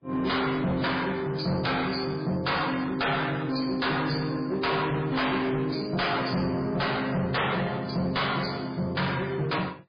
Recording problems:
lossy codec; MP3, log-spectral distance 7 dB, nothing above 4.8 kHz
distortion; hard clipping, uneven, signal-to-distortion ratio 6 dB

